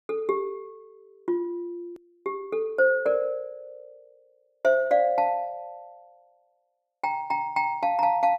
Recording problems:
click at an edit; at 2 s

